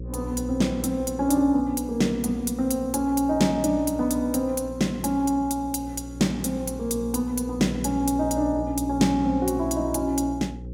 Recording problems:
electrical hum; 60 Hz, harmonics up to 540 Hz, SNR 13 dB

